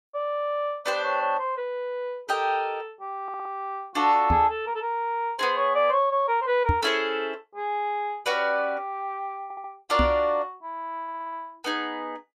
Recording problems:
audio stuttering; at 3 s, at 9.5 s and at 11 s
microphone thump; at 4.5 s, at 6.5 s and at 10 s; peak +5 dB vs average level

